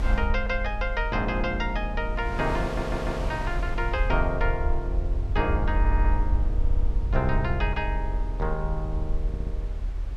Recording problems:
low-frequency rumble; below 60 Hz, SNR 0 dB
wind on the microphone; below 960 Hz, SNR 12 dB
audio stuttering; 4 times, first at 2.5 s

